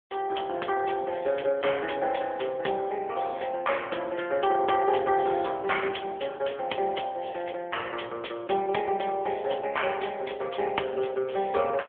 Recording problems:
phone line; 280 Hz to 3.3 kHz, AMR-NB

